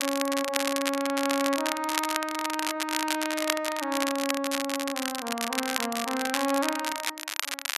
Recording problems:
crackling; vinyl, SNR 1 dB

